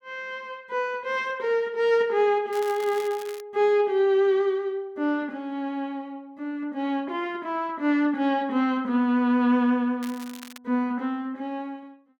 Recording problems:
crackling; at 2.5 s and at 10 s; loose cable, SNR 19 dB

